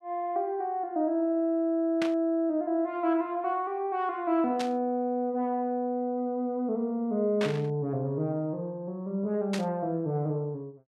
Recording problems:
static burst; 4 times, first at 2 s; peak -2 dB vs average level

